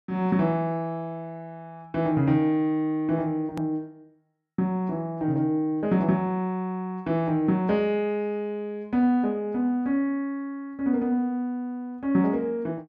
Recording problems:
click at an edit; at 3.5 s

